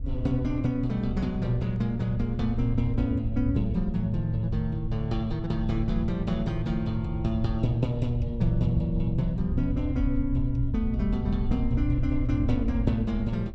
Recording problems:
wind noise; below 80 Hz, SNR 5 dB

